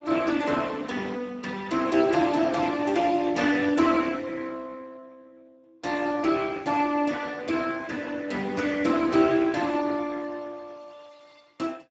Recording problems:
codec artefacts; Speex, log-spectral distance 4 dB, nothing above 7.6 kHz

